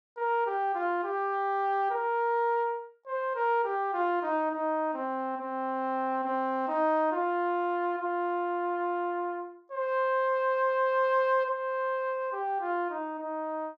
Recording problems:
none

